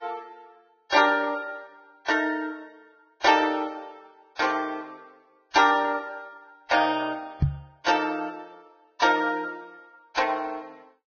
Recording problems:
lossy compression; Vorbis, log-spectral distance 3 dB, nothing above 6.3 kHz
microphone bump; at 7.5 s; peak +6 dB vs average level

